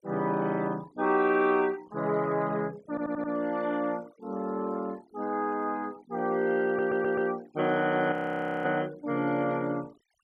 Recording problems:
noise reduction artefacts; signal-to-artefact ratio 24 dB
audio stuttering; at 3 s and at 6.5 s
audio freezing; at 8 s for 0.5 s

